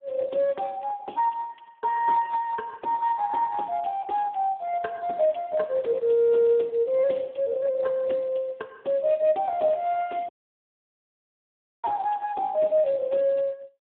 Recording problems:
phone line; 300 Hz to 3.7 kHz, Speex
dropout; at 10 s for 1.5 s

